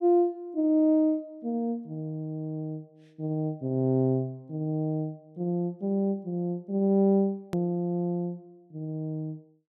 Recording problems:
hard cut with a click; at 7.5 s

